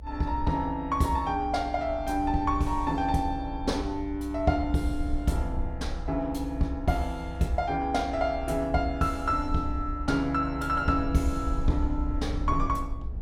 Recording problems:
rumble; below 64 Hz, SNR 8 dB

